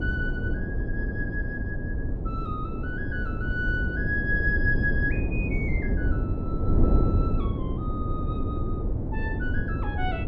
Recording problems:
wind noise; below 190 Hz, SNR -4 dB

